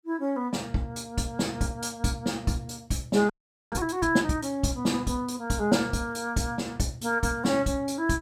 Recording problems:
audio freezing; at 3.5 s

